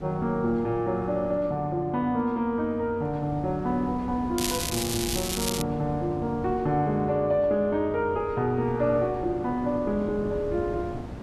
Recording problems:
wind on the microphone; below 350 Hz, SNR 14 dB
crackling; from 4.5 to 5.5 s; loose cable, SNR 3 dB

